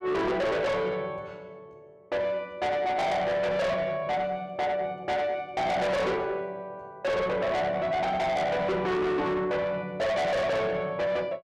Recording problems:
distortion; soft clipping, signal-to-distortion ratio 6 dB

